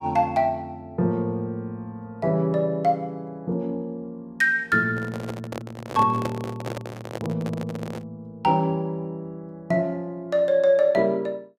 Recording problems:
microphone handling noise; from 5 to 8 s; peak -1 dB vs average level

